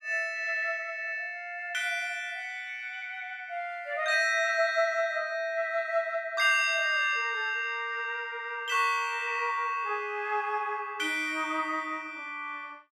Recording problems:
none

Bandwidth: 16 kHz